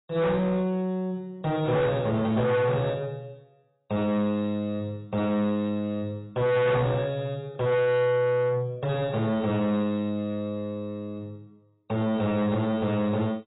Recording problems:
lossy codec; AAC, log-spectral distance 3 dB, nothing above 3.8 kHz
distortion; soft clipping, signal-to-distortion ratio 7 dB

